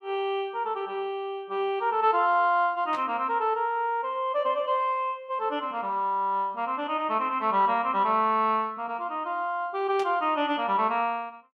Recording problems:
burst of static; at 3 s and at 10 s; peak -10 dB vs average level

